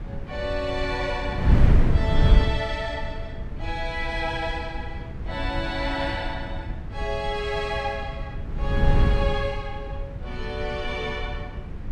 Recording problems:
wind on the microphone; below 110 Hz, SNR -2 dB

